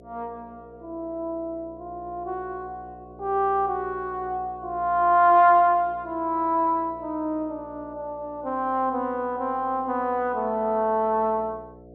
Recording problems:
mains hum; 60 Hz, harmonics up to 720 Hz, SNR 23 dB

